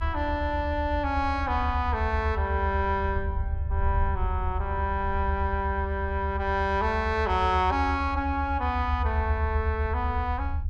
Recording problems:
low-frequency rumble; below 78 Hz, SNR 3 dB

